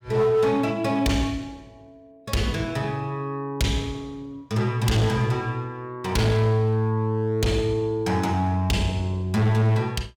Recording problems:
distorted audio; hard clipping, signal-to-distortion ratio 10 dB

